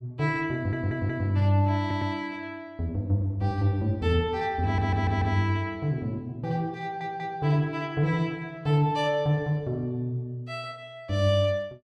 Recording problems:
audio stuttering; 4 times, first at 0.5 s

